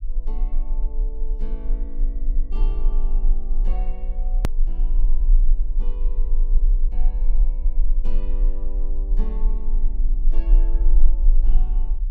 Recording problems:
low-frequency rumble; below 34 Hz, strongest tone 22 Hz, SNR -18 dB
edit click; at 4.5 s

